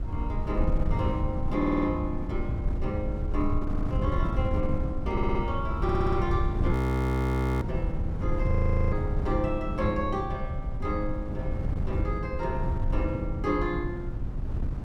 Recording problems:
wind on the microphone; below 130 Hz, SNR -1 dB
stutter; 4 times, first at 1.5 s
frozen audio; at 6.5 s for 1 s and at 8.5 s

